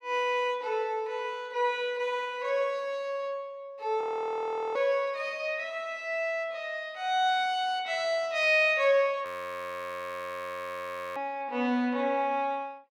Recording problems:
audio freezing; at 4 s for 0.5 s and at 9.5 s for 2 s

